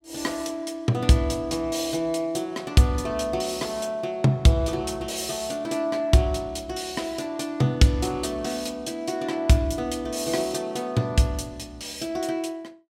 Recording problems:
none

